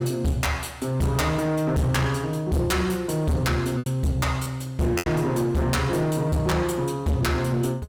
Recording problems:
distortion; hard clipping, signal-to-distortion ratio 7 dB
packet loss; 3% of the sound replaced, filled with repeated pitch periods

